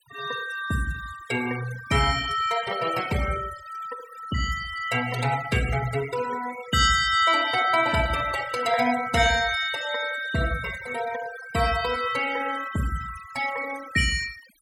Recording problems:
denoising artefacts; signal-to-artefact ratio 13 dB

